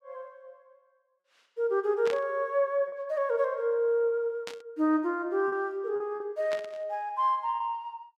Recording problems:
lost packets; 3% of the sound replaced, filled with repeated pitch periods
static burst; at 2 s, at 4.5 s and at 6.5 s; peak -5 dB vs average level

